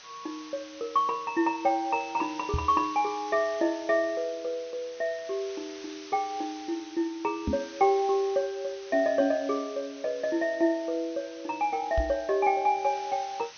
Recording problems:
treble cut off; nothing above 6.3 kHz
background hiss; slope +2 dB per octave, SNR 18 dB
microphone thump; at 2.5 s, at 7.5 s and at 12 s; peak +2 dB vs average level

